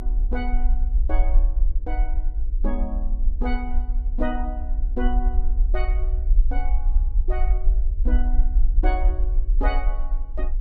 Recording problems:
hum; 60 Hz, harmonics up to 480 Hz, SNR 21 dB
low-frequency rumble; below 46 Hz, SNR -9 dB

